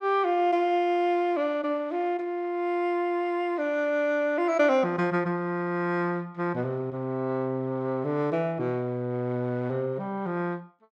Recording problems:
none

